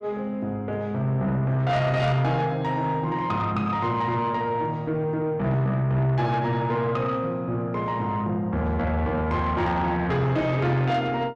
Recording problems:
distortion; soft clipping, signal-to-distortion ratio 11 dB

